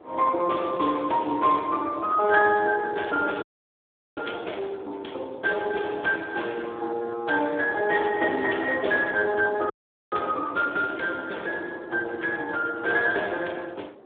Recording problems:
telephone audio; 280 Hz to 3.5 kHz, Speex
wind noise; below 580 Hz, SNR 20 dB
audio freezing; at 3.5 s for 1 s and at 9.5 s

